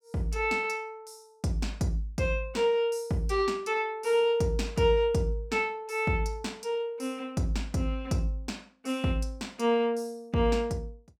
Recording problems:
none

